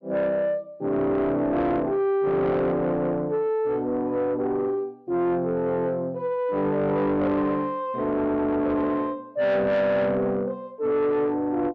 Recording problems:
distortion; soft clipping, signal-to-distortion ratio 11 dB

